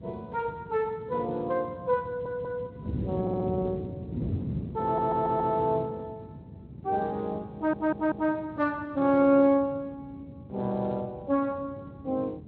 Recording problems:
lossy compression; Speex, log-spectral distance 2 dB
wind on the microphone; below 250 Hz, SNR 11 dB
stutter; 4 times, first at 2 s

